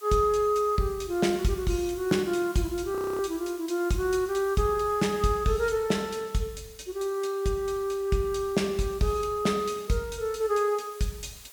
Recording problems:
background hiss; slope +1 dB per octave, SNR 21 dB
audio freezing; at 3 s

